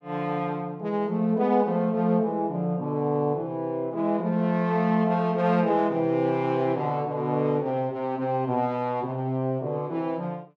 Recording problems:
none

